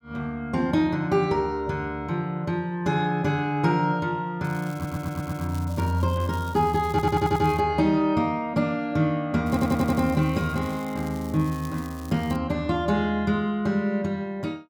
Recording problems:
crackling; from 4.5 to 7.5 s and from 9.5 to 12 s; loose cable, SNR 22 dB
audio stuttering; at 4.5 s, at 7 s and at 9.5 s

